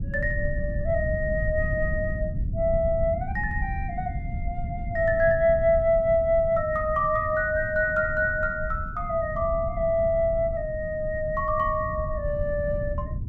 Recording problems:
rumble; below 120 Hz, SNR 8 dB

